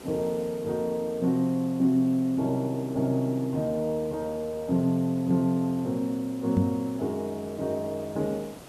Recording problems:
background hiss; slope -6 dB per octave, SNR 19 dB
microphone bump; at 6.5 s; peak +5 dB vs average level

